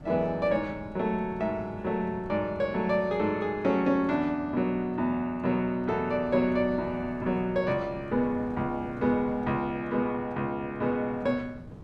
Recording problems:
wind noise; below 290 Hz, SNR 18 dB

